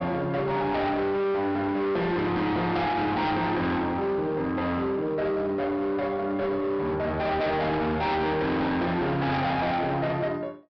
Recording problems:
treble cut off; nothing above 5.5 kHz
distorted audio; hard clipping, signal-to-distortion ratio 7 dB

